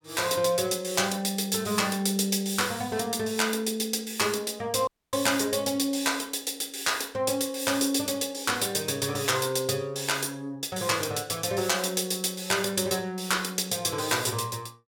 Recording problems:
audio cutting out; at 5 s

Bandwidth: 17.5 kHz